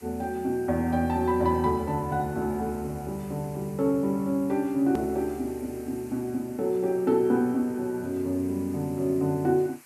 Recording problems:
background hiss; SNR 24 dB
hard cut with a click; at 5 s

